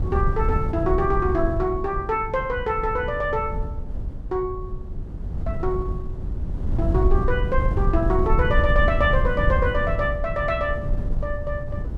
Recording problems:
wind on the microphone; below 96 Hz, SNR 2 dB

